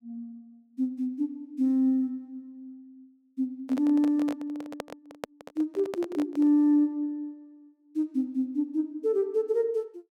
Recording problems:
handling noise; from 3.5 to 6.5 s; peak -4 dB vs average level

